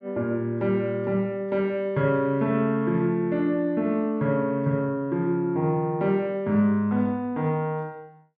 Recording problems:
none

